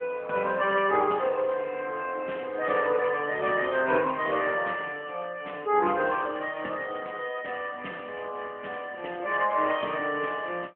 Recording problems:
phone line; 240 Hz to 3.3 kHz, AMR-NB

